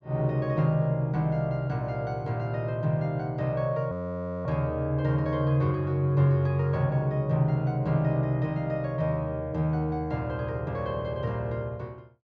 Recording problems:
low-pass filter; nothing above 7.8 kHz
frozen audio; at 4 s for 0.5 s

